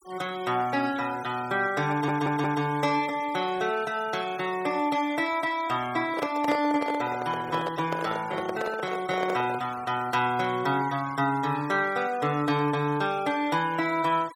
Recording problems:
denoising artefacts; signal-to-artefact ratio 18 dB
stutter; at 2 s
microphone handling noise; from 6 to 9.5 s; peak +1 dB vs average level

